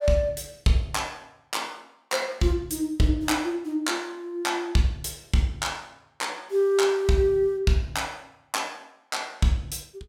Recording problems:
none

